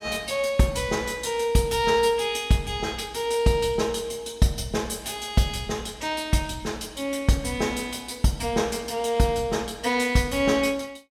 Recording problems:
none

